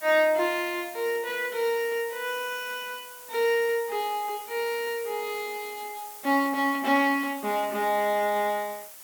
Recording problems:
hiss; SNR 15 dB

